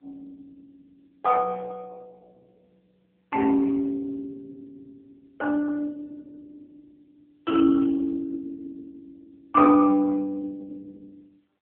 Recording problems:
telephone audio; 300 Hz to 2.3 kHz, AMR-NB

